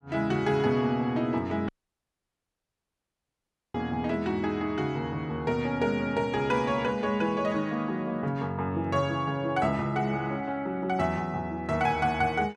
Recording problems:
audio cutting out; at 1.5 s for 2 s

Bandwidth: 12.5 kHz